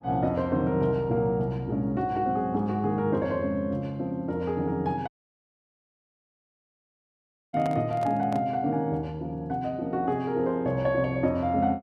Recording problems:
dropout; at 5 s for 2.5 s
microphone handling noise; at 7.5 s; peak -6 dB vs average level

